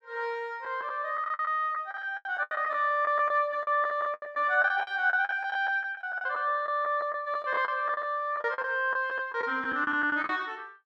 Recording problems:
lost packets; 14% of the sound replaced, filled with the last packet

